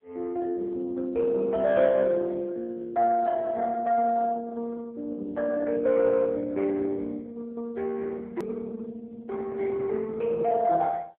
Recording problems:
phone line; 300 Hz to 2.1 kHz, AMR-NB
hard cut with a click; at 8.5 s

